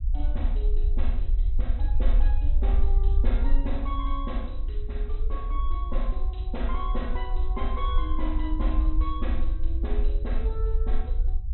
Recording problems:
low-pass filter; nothing above 4 kHz
rumble; below 50 Hz, strongest tone 20 Hz, SNR -9 dB

